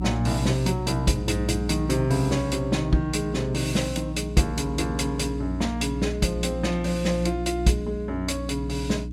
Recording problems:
electrical hum; 60 Hz, harmonics up to 300 Hz, SNR 7 dB

